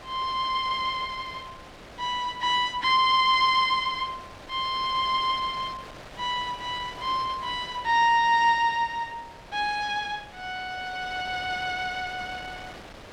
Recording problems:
wind on the microphone; below 2.5 kHz, SNR 18 dB

